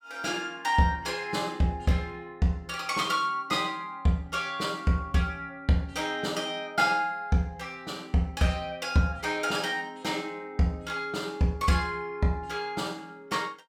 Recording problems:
none

